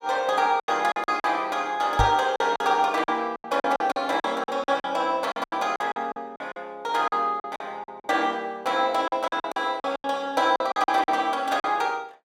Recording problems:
lost packets; 14% of the sound replaced, filled with silence
microphone thump; at 2 s; peak +3 dB vs average level

